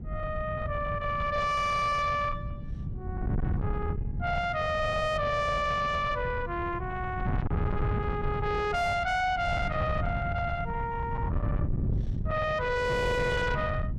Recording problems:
distortion; soft clipping, signal-to-distortion ratio 7 dB
wind noise; below 160 Hz, SNR 4 dB

